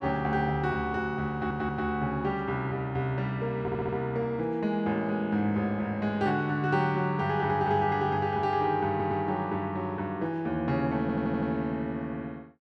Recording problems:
stutter; 4 times, first at 1.5 s

